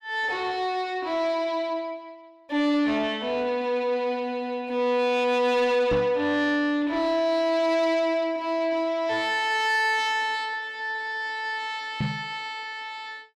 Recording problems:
distortion; soft clipping, signal-to-distortion ratio 11 dB
microphone thump; at 6 s and at 12 s; peak +2 dB vs average level

